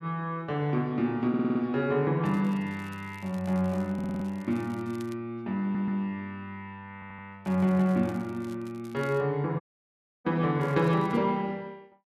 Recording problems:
audio stuttering; 4 times, first at 1.5 s
crackle; from 2.5 to 5 s, from 7.5 to 9 s and at 11 s; loose cable, SNR 27 dB
dropout; at 9.5 s for 0.5 s

